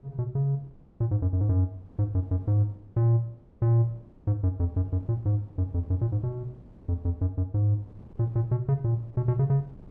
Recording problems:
wind noise; below 280 Hz, SNR 24 dB

